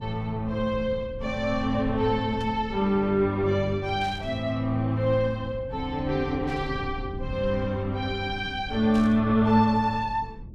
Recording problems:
low-frequency rumble; below 130 Hz, SNR 15 dB
burst of static; 4 times, first at 2.5 s; peak -13 dB vs average level

